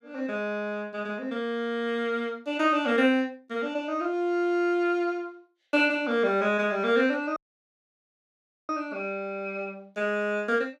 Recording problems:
dropout; at 7.5 s for 1.5 s

